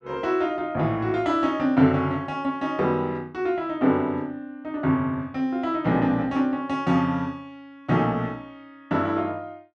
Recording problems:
none

